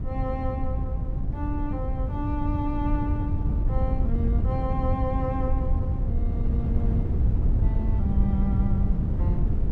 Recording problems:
wind noise; below 110 Hz, SNR -6 dB

